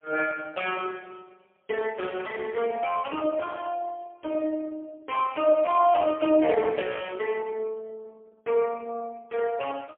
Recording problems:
telephone audio; 260 Hz to 3.3 kHz, AMR-NB, then MP3

